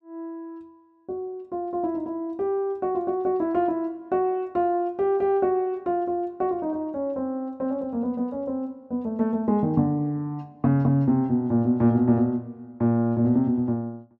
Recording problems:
none

